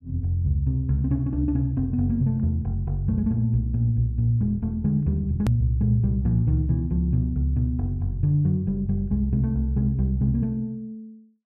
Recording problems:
edit click; at 5.5 s

